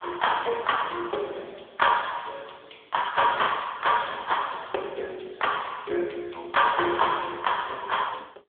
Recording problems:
phone line; 300 Hz to 2.1 kHz, AMR-NB
packet loss; 0.5% of the sound replaced, filled with the last packet

